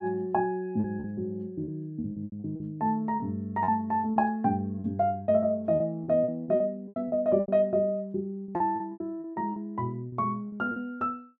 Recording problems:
packet loss; 12% of the sound replaced, filled with repeated pitch periods

